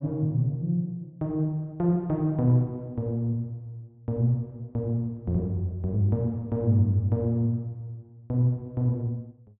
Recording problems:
treble cut off; nothing above 4 kHz

